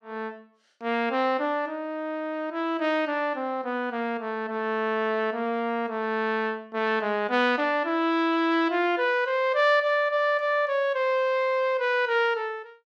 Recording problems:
none

